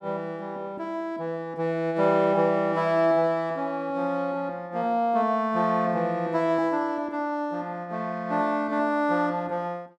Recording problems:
none

